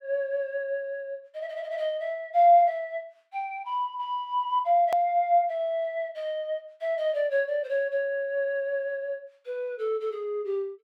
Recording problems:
click at an edit; at 5 s

